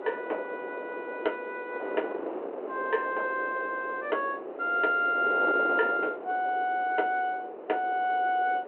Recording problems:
phone line; 340 Hz to 3.1 kHz, G.726
wind noise; below 680 Hz, SNR 9 dB

